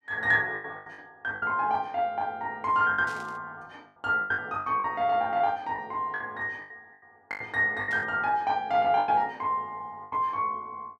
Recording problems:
lost packets; 10% of the sound replaced, filled with the last packet
burst of static; at 3 s and at 8 s; peak -14 dB vs average level

